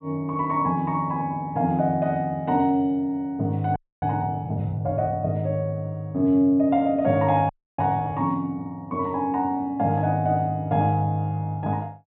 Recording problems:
treble missing; nothing above 4 kHz
audio freezing; at 4 s and at 7.5 s

